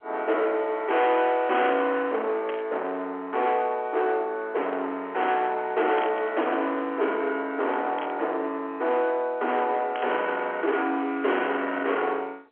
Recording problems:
telephone audio; 260 Hz to 3.5 kHz, G.711
distortion; soft clipping, signal-to-distortion ratio 8 dB
static burst; 4 times, first at 2.5 s; peak -6 dB vs average level

